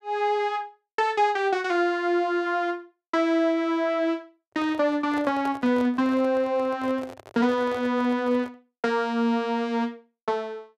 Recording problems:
handling noise; from 4.5 to 8.5 s; peak -8 dB vs average level

